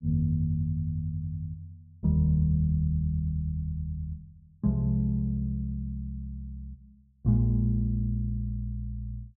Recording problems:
none

